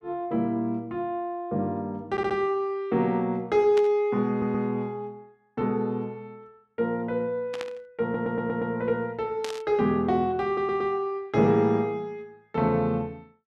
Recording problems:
stutter; 4 times, first at 2 s
burst of static; at 4 s, at 7.5 s and at 9.5 s; peak -5 dB vs average level

